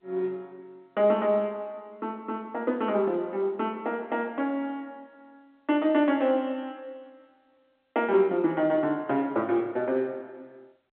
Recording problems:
telephone audio; 240 Hz to 3.6 kHz, G.711

